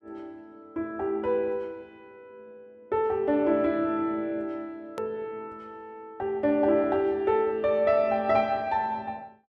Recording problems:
hard cut with a click; at 5 s

